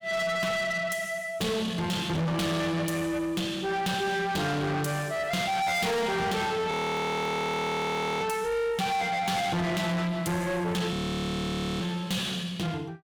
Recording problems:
distorted audio; soft clipping, signal-to-distortion ratio 6 dB
audio freezing; at 6.5 s for 1.5 s and at 11 s for 1 s

